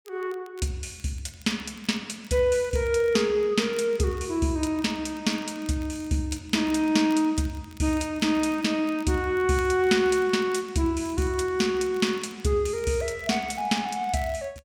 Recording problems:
crackling; vinyl, SNR 27 dB

